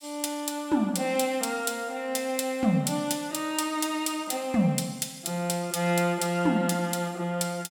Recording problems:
none

